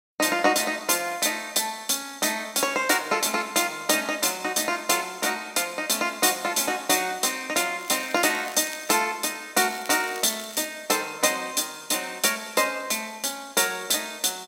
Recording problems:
crackle; from 8 to 9 s and from 9.5 to 11 s; loose cable, SNR 18 dB

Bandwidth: 16 kHz